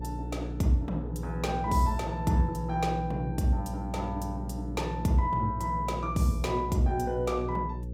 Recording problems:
hum; 60 Hz, harmonics up to 540 Hz, SNR 7 dB

